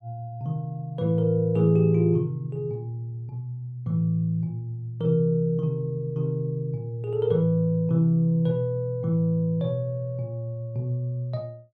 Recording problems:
none

